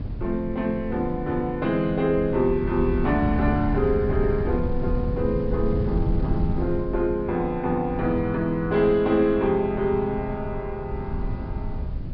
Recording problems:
treble cut off; nothing above 5.5 kHz
wind on the microphone; below 130 Hz, SNR 7 dB

